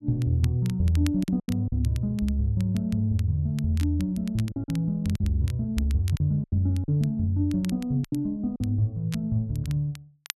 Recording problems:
crackling; vinyl, SNR 21 dB
lost packets; 6% of the sound replaced, filled with silence

